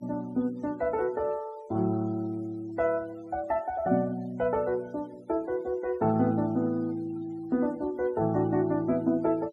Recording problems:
denoising artefacts; signal-to-artefact ratio 25 dB

